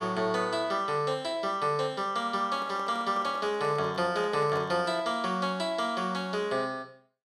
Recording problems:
handling noise; from 2.5 to 5 s; peak -7 dB vs average level

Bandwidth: 14 kHz